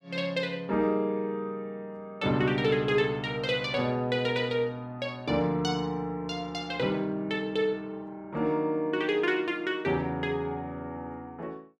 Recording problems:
none

